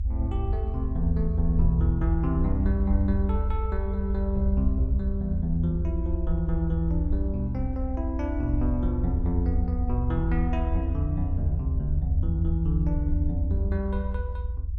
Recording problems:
low-frequency rumble; below 78 Hz, strongest tone 58 Hz, SNR -1 dB

